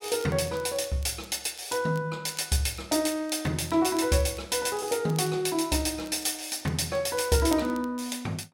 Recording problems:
crackling; vinyl, SNR 22 dB

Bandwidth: 16 kHz